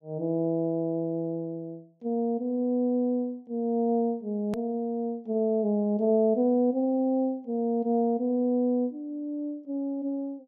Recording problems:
hard cut with a click; at 4.5 s

